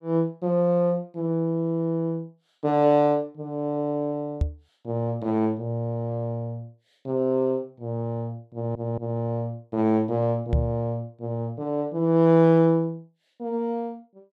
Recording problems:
microphone bump; at 4.5 s and at 11 s; peak +5 dB vs average level
audio stuttering; at 8.5 s

